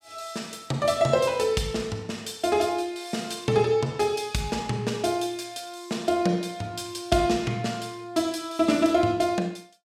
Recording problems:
none

